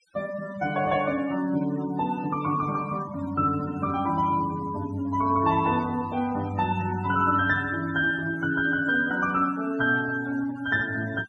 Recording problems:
denoising artefacts; signal-to-artefact ratio 17 dB

